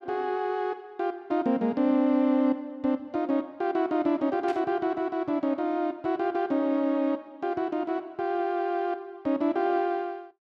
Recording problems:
static burst; at 4.5 s; peak -11 dB vs average level

